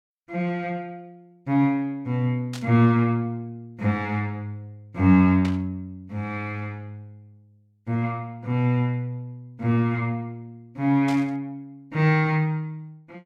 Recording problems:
static burst; at 2.5 s, at 5.5 s and at 11 s; peak -7 dB vs average level

